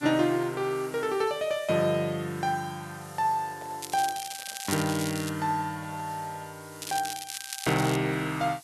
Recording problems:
hiss; SNR 19 dB
handling noise; from 3 to 6.5 s; peak -12 dB vs average level
crackle; from 4 to 5.5 s and from 7 to 8 s; loose cable, SNR 7 dB

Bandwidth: 12.5 kHz